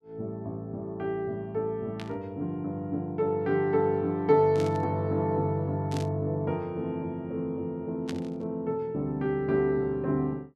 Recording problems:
burst of static; 4 times, first at 2 s; peak -7 dB vs average level

